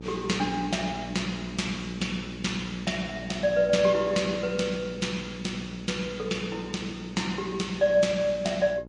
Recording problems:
codec artefacts; MP3, log-spectral distance 2 dB, nothing above 10.1 kHz
hum; 60 Hz, harmonics up to 960 Hz, SNR 14 dB

